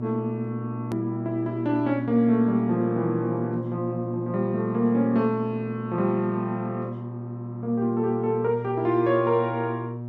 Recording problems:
hum; 60 Hz, harmonics up to 960 Hz, SNR 8 dB
edit click; at 1 s

